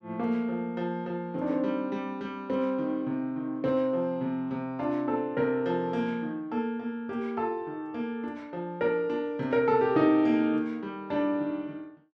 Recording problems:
none

